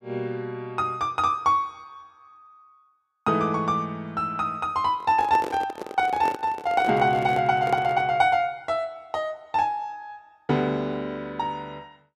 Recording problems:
handling noise; from 5 to 8 s; peak -3 dB vs average level

